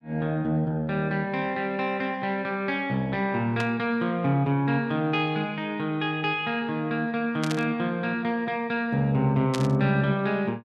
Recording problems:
burst of static; at 3.5 s, at 7.5 s and at 9.5 s; peak -2 dB vs average level

